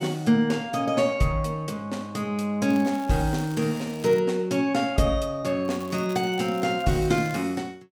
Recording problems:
crackle; from 2.5 to 4 s and from 5.5 to 7.5 s; loose cable, SNR 22 dB

